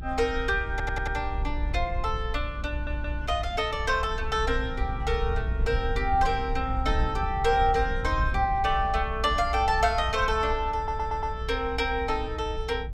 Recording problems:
low-frequency rumble; below 64 Hz, SNR 6 dB
audio stuttering; at 0.5 s, at 2.5 s and at 11 s

